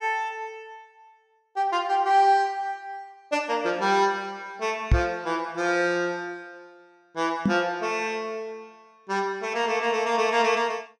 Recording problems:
microphone thump; at 5 s and at 7.5 s; peak +8 dB vs average level

